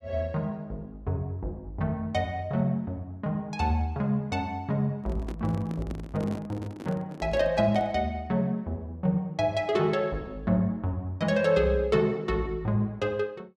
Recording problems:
microphone handling noise; from 5 to 8 s; peak -6 dB vs average level

